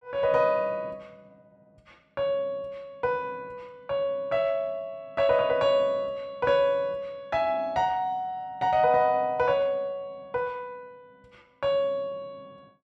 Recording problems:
none

